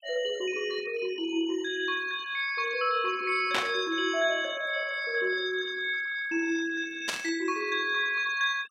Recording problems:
noise reduction artefacts; signal-to-artefact ratio 17 dB
static burst; at 3.5 s and at 7 s; peak +4 dB vs average level

